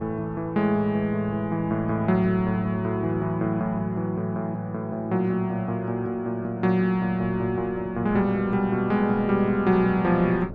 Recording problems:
wind on the microphone; below 330 Hz, SNR 19 dB

